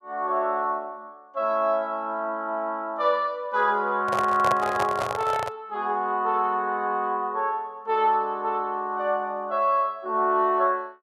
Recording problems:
microphone handling noise; from 4 to 5.5 s; peak +2 dB vs average level

